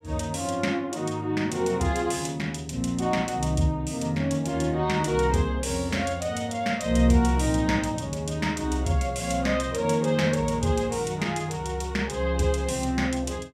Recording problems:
none

